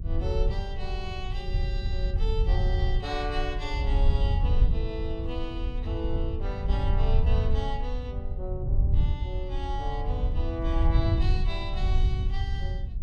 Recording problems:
rumble; below 76 Hz, SNR -7 dB

